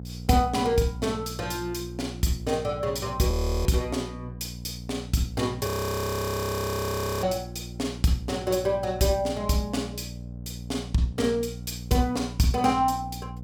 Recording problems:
hum; 60 Hz, harmonics up to 540 Hz, SNR 12 dB
frozen audio; at 3.5 s and at 5.5 s for 1.5 s

